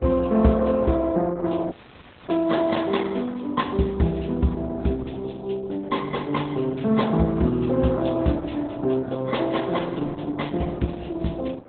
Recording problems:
codec artefacts; AAC, then Opus, log-spectral distance 5 dB, nothing above 3.9 kHz
wind noise; below 570 Hz, SNR 23 dB
dropout; at 1.5 s for 0.5 s

